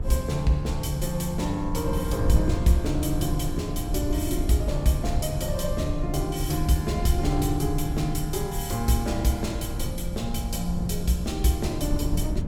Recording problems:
wind noise; below 100 Hz, SNR 4 dB

